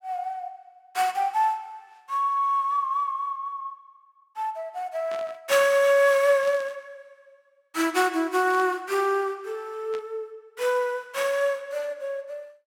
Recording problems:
static burst; 4 times, first at 5 s; peak -12 dB vs average level

